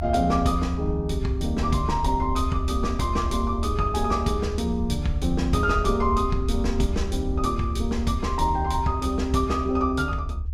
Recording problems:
rumble; below 78 Hz, SNR 5 dB

